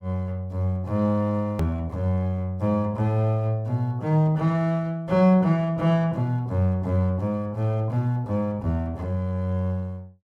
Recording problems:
click at an edit; at 1.5 s

